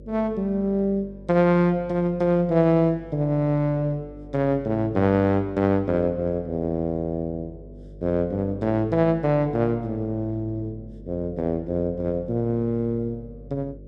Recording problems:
hum; 50 Hz, harmonics up to 600 Hz, SNR 20 dB

